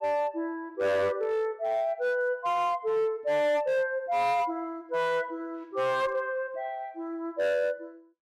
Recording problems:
distorted audio; hard clipping, signal-to-distortion ratio 11 dB

